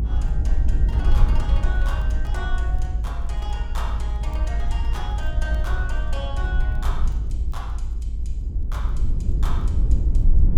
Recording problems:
rumble; below 58 Hz, SNR -11 dB
crackle; vinyl, SNR 29 dB

